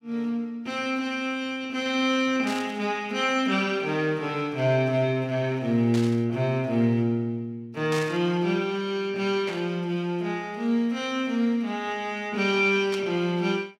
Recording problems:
static burst; 5 times, first at 2.5 s; peak -6 dB vs average level

